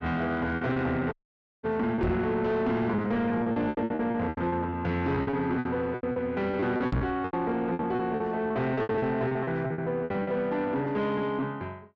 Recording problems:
treble cut off; nothing above 8 kHz
distortion; soft clipping, signal-to-distortion ratio 10 dB
lost packets; 17% of the sound replaced, filled with repeated pitch periods
audio cutting out; at 1 s for 0.5 s
knock on the microphone; at 2 s and at 7 s; peak +4 dB vs average level

